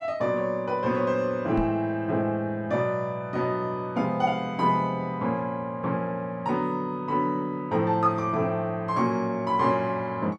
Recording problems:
knock on the microphone; at 1.5 s; peak -2 dB vs average level

